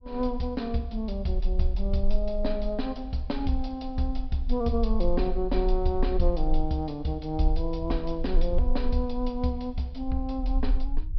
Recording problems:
treble cut off; nothing above 5.5 kHz
rumble; below 40 Hz, strongest tone 20 Hz, SNR 3 dB

